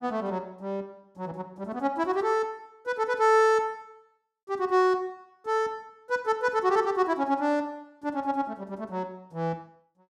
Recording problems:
none

